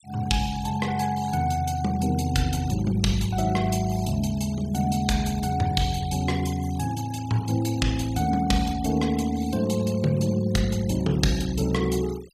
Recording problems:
denoising artefacts; signal-to-artefact ratio 19 dB

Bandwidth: 15 kHz